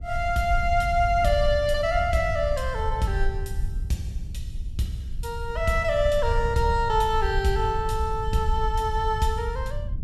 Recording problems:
low-frequency rumble; below 72 Hz, SNR 6 dB

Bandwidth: 14.5 kHz